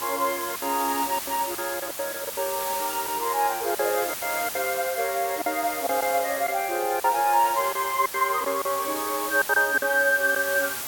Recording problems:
background hiss; slope 0 dB per octave, SNR 6 dB
lost packets; 9% of the sound replaced, filled with silence

